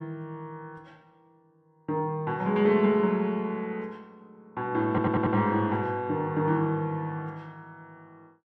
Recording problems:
stutter; at 5 s

